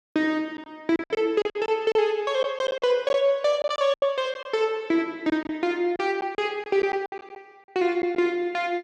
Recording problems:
packet loss; 10% of the sound replaced, filled with silence

